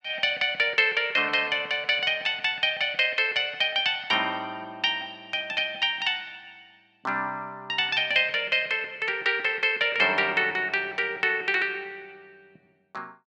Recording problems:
none

